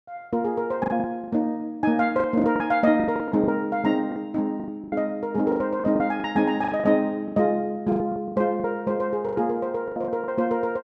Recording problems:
lost packets; 15% of the sound replaced, filled with the last packet

